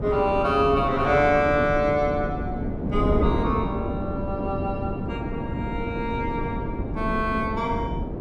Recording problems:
wind on the microphone; below 330 Hz, SNR 4 dB

